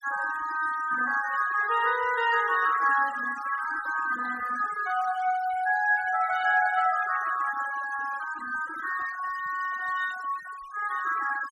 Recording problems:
noise reduction artefacts; signal-to-artefact ratio 15 dB

